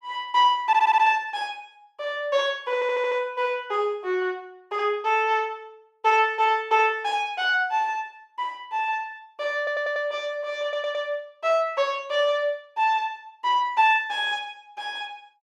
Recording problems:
stutter; 4 times, first at 0.5 s

